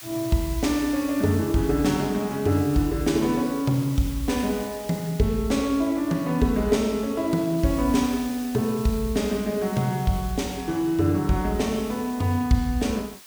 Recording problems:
hiss; slope +2 dB per octave, SNR 17 dB

